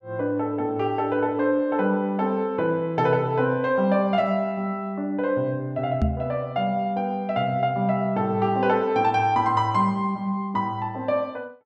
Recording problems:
microphone bump; at 6 s; peak +4 dB vs average level

